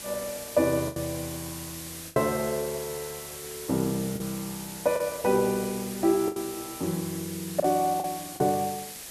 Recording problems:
background hiss; SNR 9 dB
lost packets; 5% of the sound replaced, filled with the last packet

